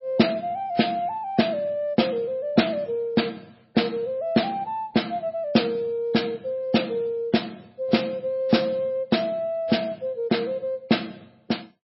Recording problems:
lossy compression; MP3, log-spectral distance 3 dB, nothing above 5.5 kHz

